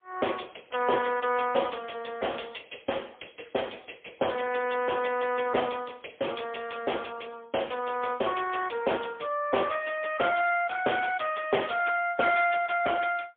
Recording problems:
telephone audio; 320 Hz to 3.3 kHz, AMR-NB, then MP3

